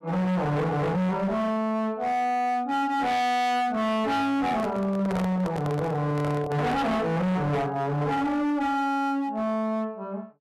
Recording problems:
distortion; hard clipping, signal-to-distortion ratio 6 dB
handling noise; from 4.5 to 7 s; peak -2 dB vs average level

